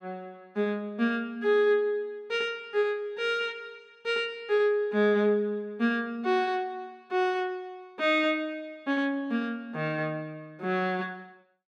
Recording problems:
none

